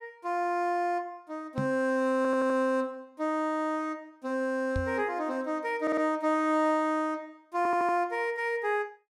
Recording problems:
knock on the microphone; at 1.5 s and at 5 s; peak +1 dB vs average level
audio stuttering; at 2 s, at 6 s and at 7.5 s

